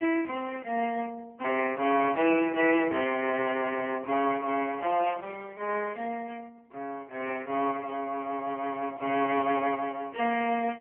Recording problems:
phone line; 280 Hz to 3.1 kHz, AMR-NB

